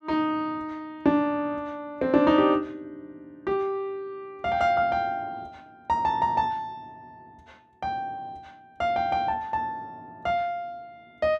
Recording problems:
none

